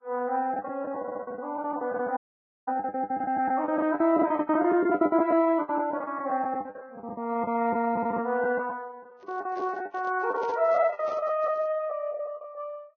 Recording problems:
lossy compression; Vorbis, log-spectral distance 2 dB
lost packets; 18% of the sound replaced, filled with the last packet
audio stuttering; at 1 s
dropout; at 2 s for 0.5 s
microphone handling noise; from 9 to 12 s; peak -10 dB vs average level

